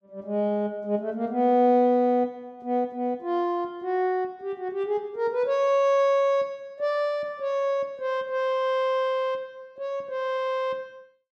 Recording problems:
none

